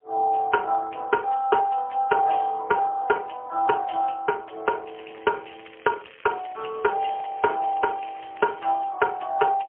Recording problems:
phone line; 280 Hz to 2 kHz, AMR-NB, then MP3
crackle; from 5 to 8.5 s; loose cable, SNR 23 dB

